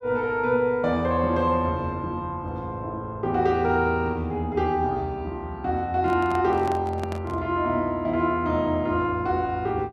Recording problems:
handling noise; from 6 to 7.5 s; peak -6 dB vs average level

